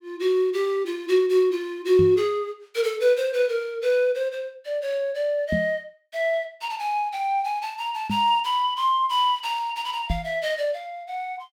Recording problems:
microphone bump; 4 times, first at 2 s; peak +1 dB vs average level

